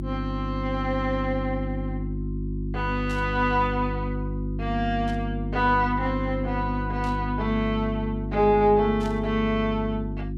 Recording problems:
electrical hum; 50 Hz, harmonics up to 350 Hz, SNR 4 dB
burst of static; 4 times, first at 3 s; peak -13 dB vs average level

